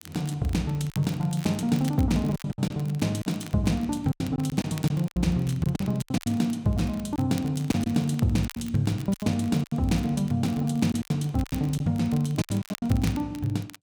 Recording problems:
crackle; vinyl, SNR 20 dB
lost packets; 11% of the sound replaced, filled with silence

